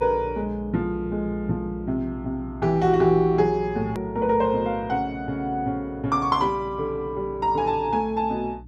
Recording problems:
electrical hum; 60 Hz, harmonics up to 300 Hz, SNR 17 dB
edit click; at 4 s

